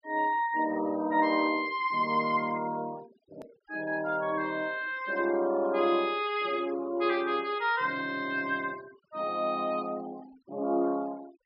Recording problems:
treble cut off; nothing above 5.3 kHz
denoising artefacts; signal-to-artefact ratio 23 dB
edit click; at 3.5 s

